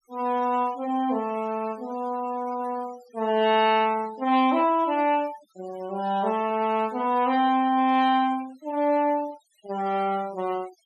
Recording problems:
noise reduction artefacts; signal-to-artefact ratio 21 dB

